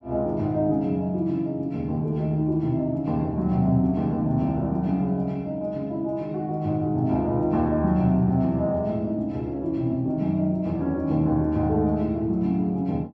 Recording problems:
none

